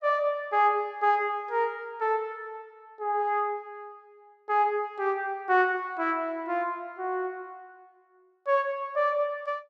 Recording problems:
none

